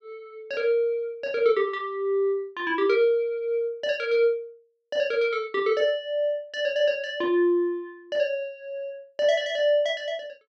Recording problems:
none

